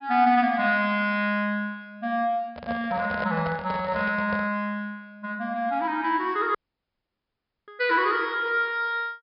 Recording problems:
treble cut off; nothing above 5.5 kHz
handling noise; from 2.5 to 4.5 s; peak -4 dB vs average level
audio cutting out; at 6.5 s for 1 s

